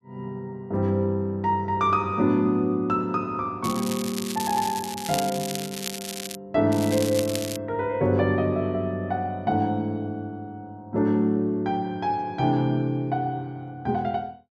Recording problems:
crackle; from 3.5 to 6.5 s and at 6.5 s; loose cable, SNR 9 dB

